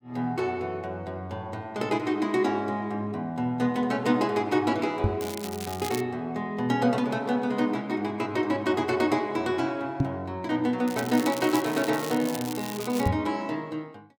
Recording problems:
microphone bump; at 5 s, at 10 s and at 13 s; peak +7 dB vs average level
crackling; at 5 s and from 11 to 13 s; loose cable, SNR 11 dB

